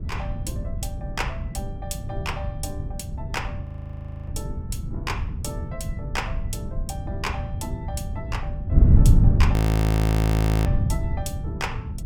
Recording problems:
wind noise; below 130 Hz, SNR -9 dB
audio freezing; at 3.5 s for 0.5 s and at 9.5 s for 1 s

